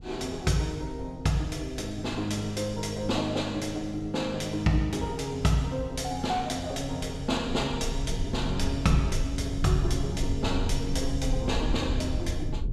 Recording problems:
rumble; below 80 Hz, SNR 6 dB

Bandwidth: 14.5 kHz